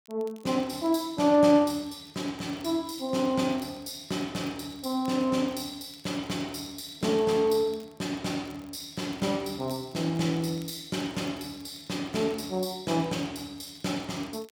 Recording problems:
crackle; vinyl, SNR 28 dB

